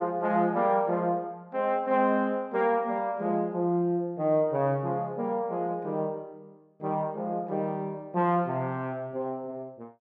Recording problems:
none

